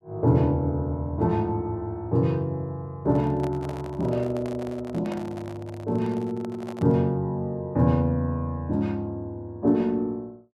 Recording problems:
handling noise; from 3 to 7 s; peak -7 dB vs average level

